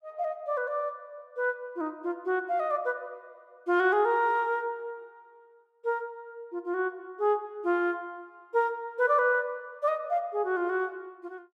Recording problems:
none

